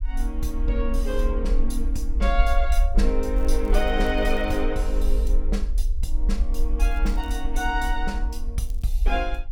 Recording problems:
rumble; below 48 Hz, SNR -2 dB
crackle; from 3.5 to 4.5 s, at 7 s and at 8.5 s; loose cable, SNR 25 dB

